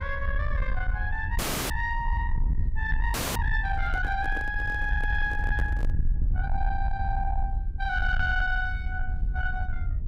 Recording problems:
distorted audio; soft clipping, signal-to-distortion ratio 10 dB
low-frequency rumble; below 68 Hz, SNR 1 dB
audio freezing; at 1.5 s and at 3 s
handling noise; from 3.5 to 6 s; peak -5 dB vs average level

